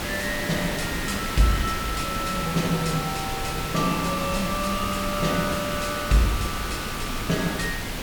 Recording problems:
background hiss; slope -3 dB per octave, SNR 3 dB
low-frequency rumble; below 120 Hz, SNR 12 dB

